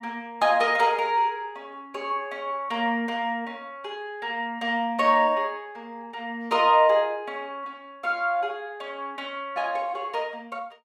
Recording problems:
none

